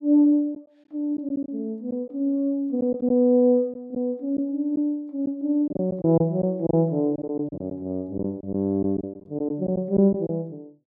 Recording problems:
lost packets; 6% of the sound replaced, filled with silence

